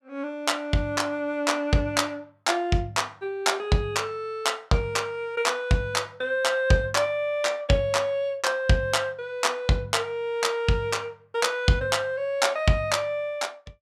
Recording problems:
none

